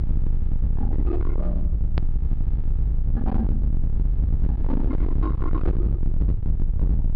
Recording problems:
treble cut off; nothing above 5.5 kHz
distorted audio; hard clipping, signal-to-distortion ratio 6 dB
hum; 60 Hz, harmonics up to 1.7 kHz, SNR 16 dB
rumble; below 68 Hz, strongest tone 22 Hz, SNR -7 dB
hard cut with a click; at 2 s

